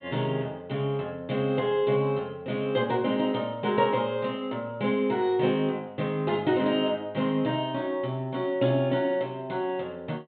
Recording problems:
treble cut off; nothing above 4 kHz

